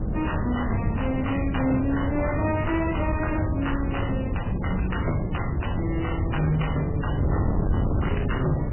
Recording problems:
lossy compression; MP3, log-spectral distance 5 dB, nothing above 3 kHz
distortion; soft clipping, signal-to-distortion ratio 12 dB
wind noise; below 220 Hz, SNR 0 dB

